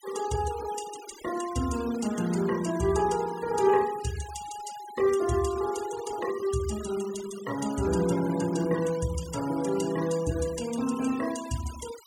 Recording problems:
noise reduction artefacts; signal-to-artefact ratio 15 dB

